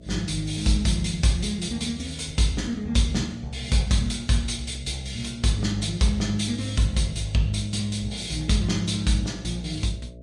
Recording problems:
lossy codec; Vorbis, log-spectral distance 3 dB, nothing above 18.3 kHz
hum; 60 Hz, harmonics up to 660 Hz, SNR 20 dB

